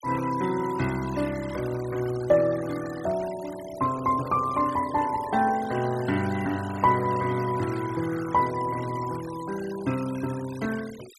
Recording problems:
noise reduction artefacts; signal-to-artefact ratio 16 dB

